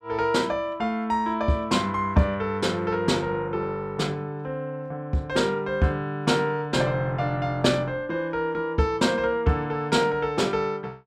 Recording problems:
none

